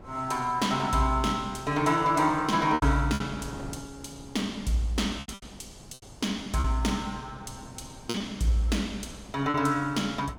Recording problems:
wind noise; below 520 Hz, SNR 19 dB
lost packets; 5% of the sound replaced, filled with repeated pitch periods

